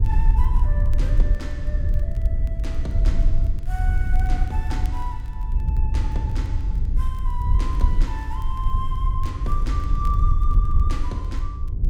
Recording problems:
low-frequency rumble; below 62 Hz, SNR -11 dB
crackling; vinyl, SNR 23 dB

